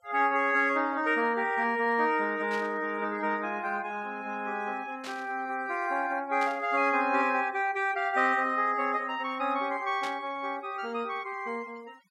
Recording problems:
denoising artefacts; signal-to-artefact ratio 26 dB
burst of static; 4 times, first at 2.5 s; peak -8 dB vs average level

